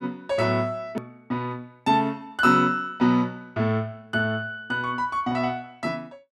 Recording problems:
click at an edit; at 1 s

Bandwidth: 13 kHz